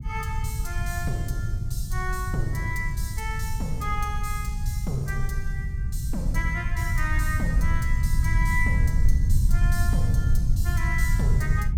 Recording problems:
low-frequency rumble; below 90 Hz, SNR -5 dB

